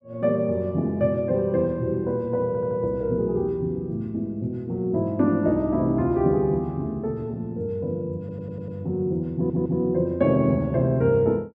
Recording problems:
stutter; at 2.5 s, at 8 s and at 9.5 s

